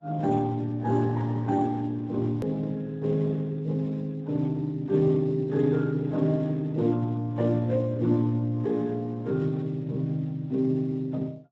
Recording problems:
lossy codec; MP3, then Speex, log-spectral distance 2 dB, nothing above 13.1 kHz
hard cut with a click; at 2.5 s

